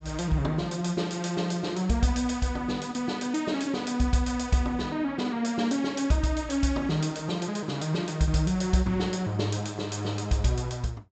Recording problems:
treble missing; nothing above 8 kHz

